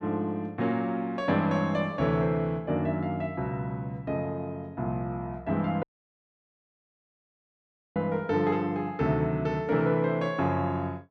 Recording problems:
dropout; at 6 s for 2 s

